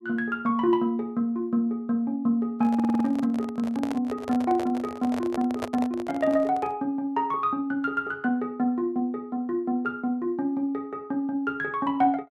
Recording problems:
microphone handling noise; from 2.5 to 7 s; peak -1 dB vs average level
audio stuttering; at 3 s

